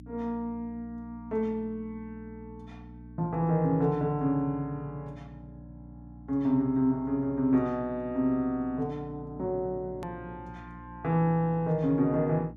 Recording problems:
hum; 60 Hz, harmonics up to 300 Hz, SNR 18 dB
hard cut with a click; at 10 s

